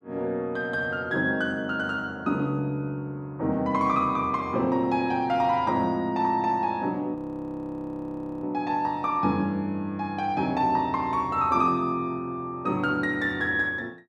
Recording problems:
audio freezing; at 7 s for 1.5 s

